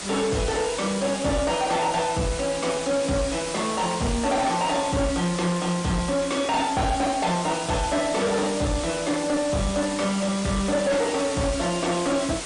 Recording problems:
lossy compression; MP3, log-spectral distance 10 dB
distorted audio; soft clipping, signal-to-distortion ratio 10 dB
hiss; slope -2 dB per octave, SNR 8 dB

